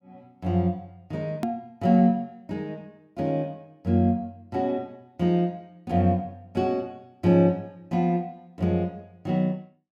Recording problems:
edit click; at 1.5 s

